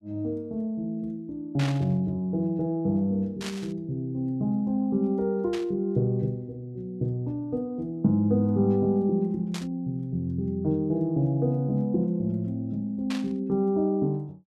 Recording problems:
static burst; 5 times, first at 1.5 s; peak -5 dB vs average level

